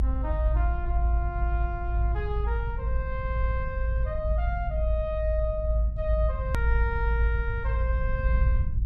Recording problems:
rumble; below 58 Hz, strongest tone 54 Hz, SNR -6 dB
click at an edit; at 6.5 s

